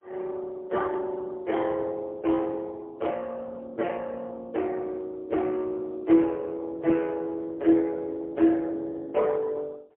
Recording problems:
phone line; 240 Hz to 3.3 kHz, AMR-NB, then MP3

